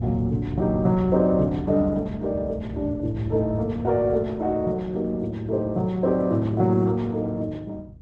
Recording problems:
lossy compression; Opus, log-spectral distance 2 dB
wind noise; below 140 Hz, SNR 12 dB

